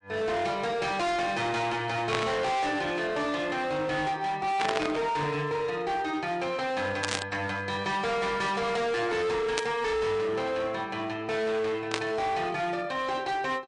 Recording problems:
codec artefacts; MP3, log-spectral distance 2 dB, nothing above 8.7 kHz
distorted audio; hard clipping, uneven, signal-to-distortion ratio 8 dB
static burst; 5 times, first at 2 s; peak +4 dB vs average level

